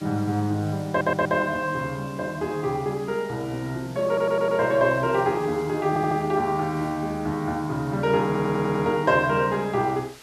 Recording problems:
background hiss; slope -1 dB per octave, SNR 23 dB
stutter; 4 times, first at 1 s

